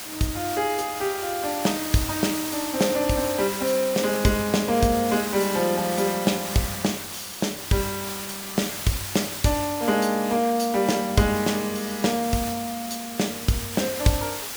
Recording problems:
hiss; slope 0 dB per octave, SNR 7 dB

